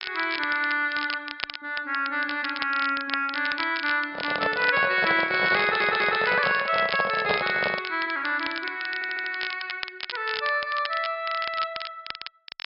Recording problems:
treble cut off; nothing above 5.5 kHz
crackle; vinyl, SNR 10 dB
handling noise; from 4 to 8 s; peak +2 dB vs average level
audio stuttering; at 5.5 s and at 9 s

